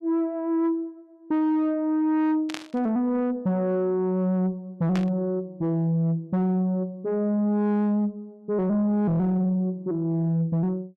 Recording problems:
distortion; soft clipping, signal-to-distortion ratio 10 dB
burst of static; at 2.5 s and at 5 s; peak -4 dB vs average level

